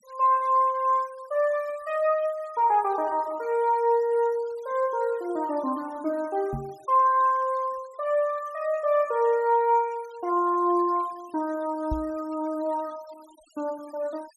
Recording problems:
denoising artefacts; signal-to-artefact ratio 27 dB
microphone thump; at 6.5 s and at 12 s; peak -3 dB vs average level

